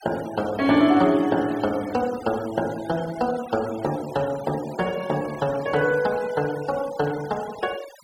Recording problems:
noise reduction artefacts; signal-to-artefact ratio 18 dB

